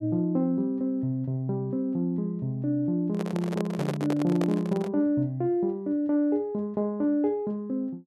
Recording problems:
handling noise; from 3 to 5 s; peak -1 dB vs average level

